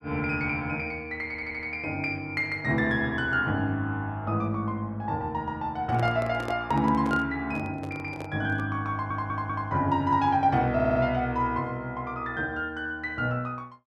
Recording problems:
audio stuttering; at 1.5 s, at 9 s and at 11 s
handling noise; from 6 to 9 s; peak -4 dB vs average level

